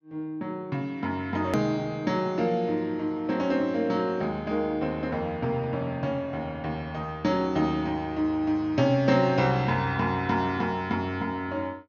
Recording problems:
low-pass filter; nothing above 6.8 kHz
click at an edit; at 1.5 s

